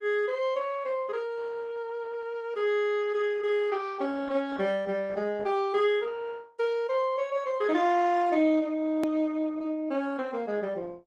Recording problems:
lossy codec; Opus, log-spectral distance 2 dB, nothing above 15.6 kHz
edit click; at 9 s

